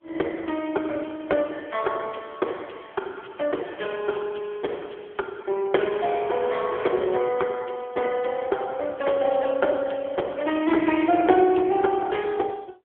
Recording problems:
telephone audio; 280 Hz to 3.4 kHz, AMR-NB

